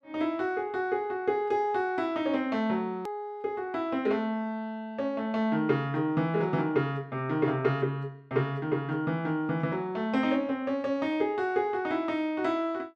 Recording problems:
edit click; at 3 s

